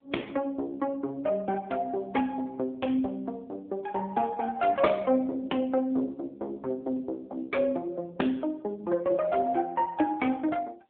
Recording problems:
phone line; 220 Hz to 3.5 kHz, AMR-NB

